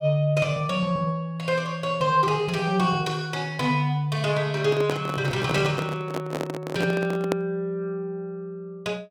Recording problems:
handling noise; from 4.5 to 7.5 s; peak +3 dB vs average level

